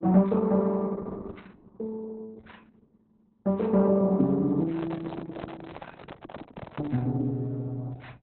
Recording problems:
codec artefacts; Opus, log-spectral distance 4 dB, nothing above 4.1 kHz
microphone handling noise; from 4.5 to 7 s; peak -9 dB vs average level

